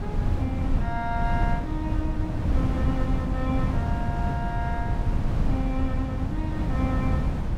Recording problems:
wind noise; below 150 Hz, SNR -6 dB

